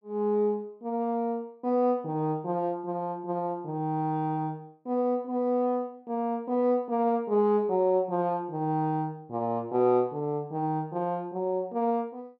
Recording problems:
none

